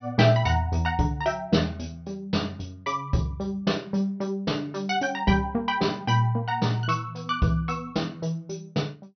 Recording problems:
treble cut off; nothing above 6.1 kHz

